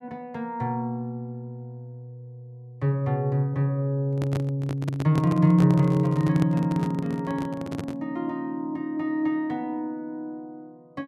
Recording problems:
handling noise; from 4 to 8 s; peak -1 dB vs average level

